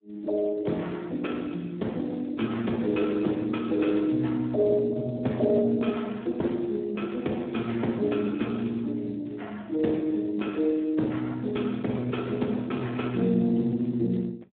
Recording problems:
phone line; 130 Hz to 3.6 kHz, Speex

